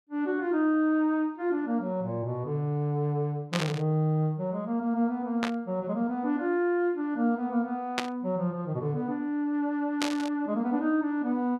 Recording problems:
static burst; 4 times, first at 3.5 s; peak +4 dB vs average level

